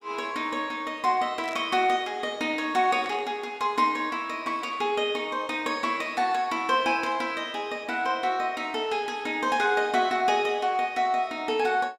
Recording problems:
burst of static; at 1.5 s, at 3 s and at 7 s; peak -10 dB vs average level

